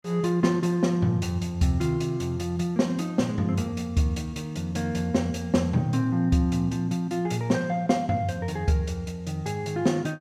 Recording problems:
none

